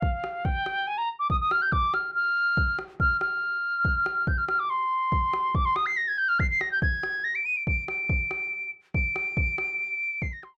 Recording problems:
none

